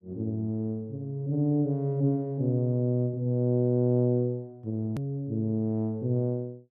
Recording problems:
edit click; at 5 s

